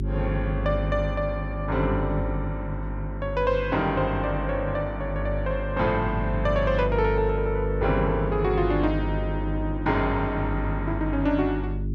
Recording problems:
hum; 50 Hz, harmonics up to 400 Hz, SNR 4 dB

